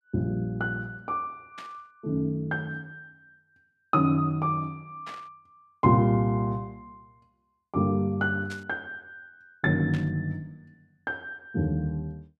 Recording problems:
static burst; 4 times, first at 1.5 s; peak -10 dB vs average level

